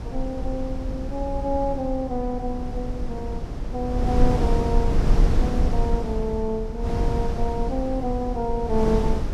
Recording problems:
wind on the microphone; below 92 Hz, SNR -1 dB

